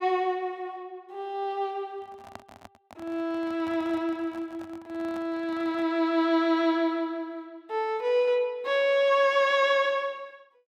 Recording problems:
handling noise; from 2 to 6 s; peak -11 dB vs average level

